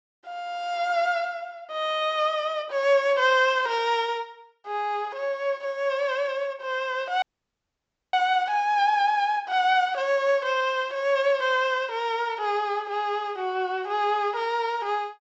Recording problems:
low-pass filter; nothing above 8 kHz
dropout; at 7 s for 1 s

